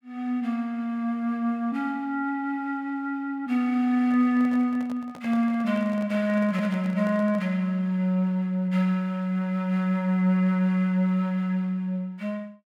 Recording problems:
microphone handling noise; from 4 to 7.5 s; peak -12 dB vs average level

